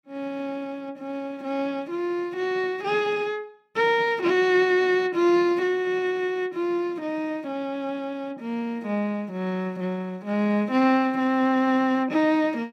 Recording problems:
none

